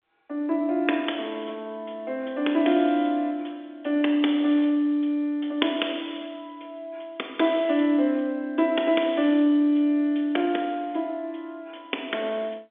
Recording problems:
telephone audio; 240 Hz to 3.6 kHz, G.711

